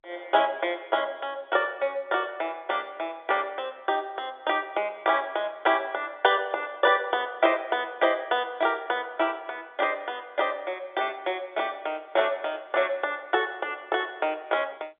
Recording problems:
telephone audio; 320 Hz to 3.6 kHz, G.711

